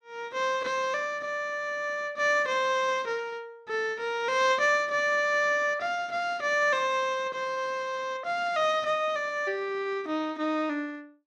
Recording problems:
none

